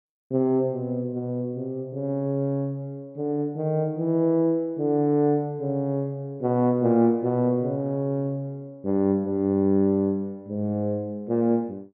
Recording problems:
none

